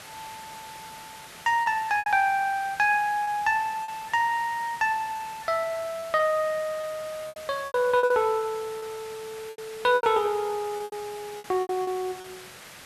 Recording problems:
background hiss; slope -1 dB per octave, SNR 17 dB
lost packets; 9% of the sound replaced, filled with repeated pitch periods

